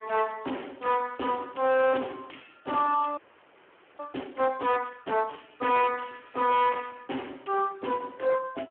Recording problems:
phone line; 280 Hz to 3.3 kHz, Speex
distortion; soft clipping, signal-to-distortion ratio 10 dB
frozen audio; at 3 s for 1 s

